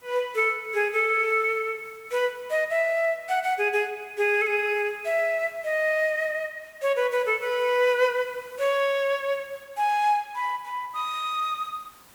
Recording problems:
background hiss; SNR 27 dB

